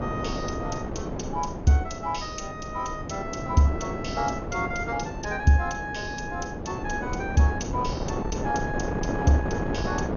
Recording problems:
codec artefacts; MP2, log-spectral distance 5 dB, nothing above 6.7 kHz
wind on the microphone; below 510 Hz, SNR 4 dB

